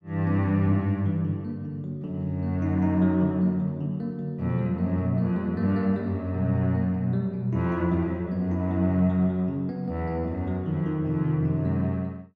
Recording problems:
none

